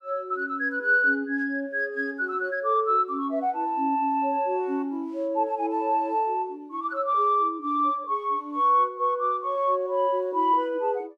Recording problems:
none

